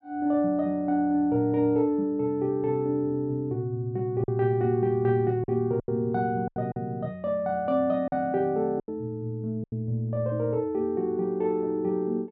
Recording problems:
lost packets; 4% of the sound replaced, filled with silence

